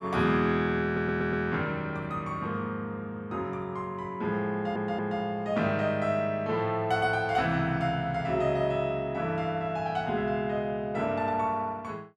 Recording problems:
stutter; at 1 s and at 4.5 s

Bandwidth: 13.5 kHz